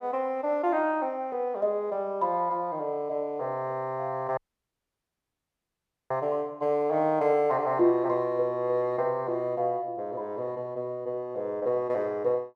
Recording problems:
dropout; at 4.5 s for 1.5 s

